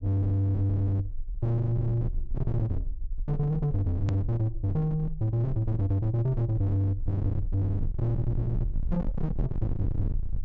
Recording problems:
treble cut off; nothing above 8 kHz
distorted audio; hard clipping, signal-to-distortion ratio 6 dB
rumble; below 92 Hz, strongest tone 20 Hz, SNR 8 dB
click at an edit; at 4 s

